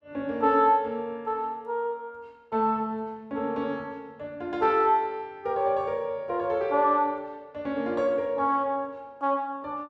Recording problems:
none

